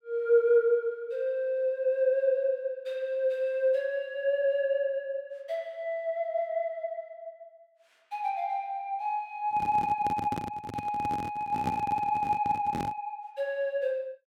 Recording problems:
handling noise; from 9.5 to 13 s; peak -1 dB vs average level

